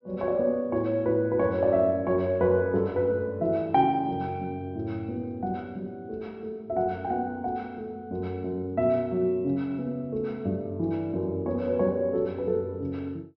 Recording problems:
treble missing; nothing above 5.9 kHz

